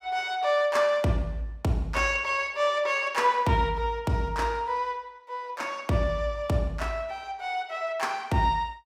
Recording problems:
none

